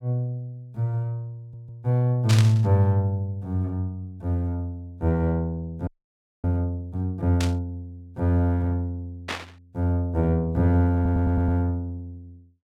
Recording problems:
stutter; at 1.5 s and at 11 s
burst of static; at 2.5 s, at 7.5 s and at 9.5 s; peak 0 dB vs average level
audio freezing; at 6 s for 0.5 s

